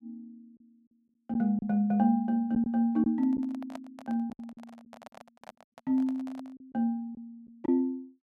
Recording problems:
packet loss; 5% of the sound replaced, filled with silence
handling noise; from 3 to 6.5 s; peak -9 dB vs average level

